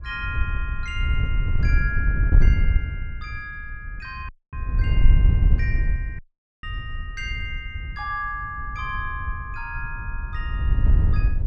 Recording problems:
wind on the microphone; below 78 Hz, SNR -8 dB
dropout; at 4.5 s and at 6 s

